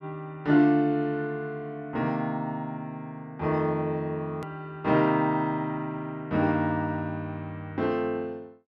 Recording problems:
hard cut with a click; at 4.5 s

